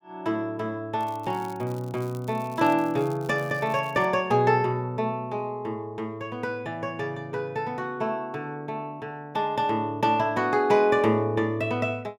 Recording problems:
crackling; from 1 to 4 s; loose cable, SNR 25 dB

